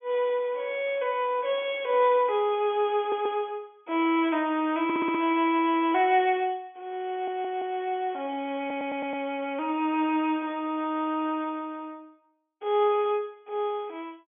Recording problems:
treble cut off; nothing above 3.4 kHz
audio stuttering; 4 times, first at 3 s

